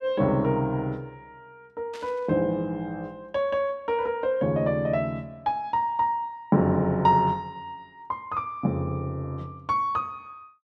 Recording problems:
burst of static; at 2 s; peak -13 dB vs average level

